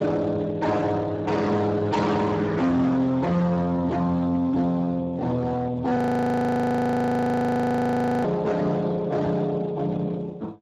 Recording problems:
codec artefacts; Speex, log-spectral distance 3 dB, nothing above 13.1 kHz
distortion; hard clipping, signal-to-distortion ratio 6 dB
audio freezing; at 6 s for 2.5 s

